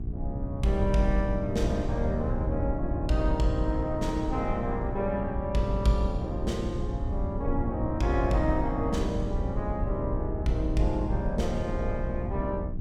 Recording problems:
mains hum; 60 Hz, harmonics up to 720 Hz, SNR 9 dB
rumble; below 90 Hz, SNR 4 dB

